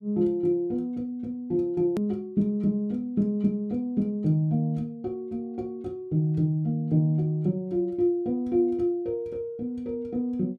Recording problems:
edit click; at 2 s

